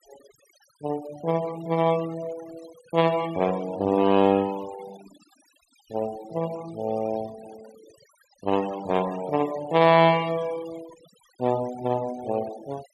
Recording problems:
denoising artefacts; signal-to-artefact ratio 18 dB

